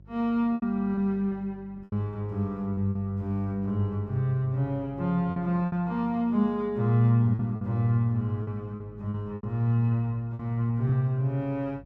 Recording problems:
hum; 50 Hz, harmonics up to 400 Hz, SNR 23 dB
packet loss; 7% of the sound replaced, filled with repeated pitch periods

